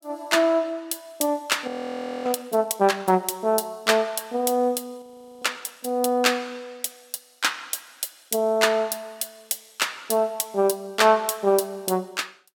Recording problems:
audio freezing; at 1.5 s for 0.5 s and at 5 s

